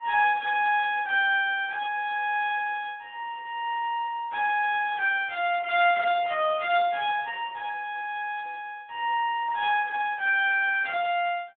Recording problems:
phone line; 280 Hz to 3.7 kHz, Speex

